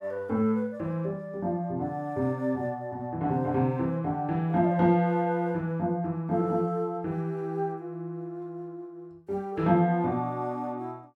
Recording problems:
none

